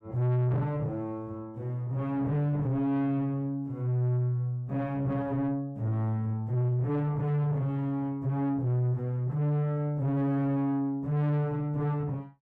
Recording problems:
distorted audio; soft clipping, signal-to-distortion ratio 7 dB

